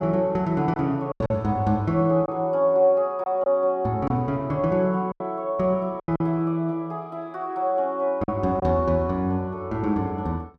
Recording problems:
lost packets; 5% of the sound replaced, filled with silence

